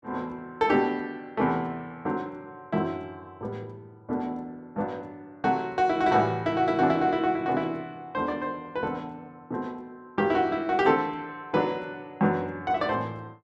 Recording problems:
none

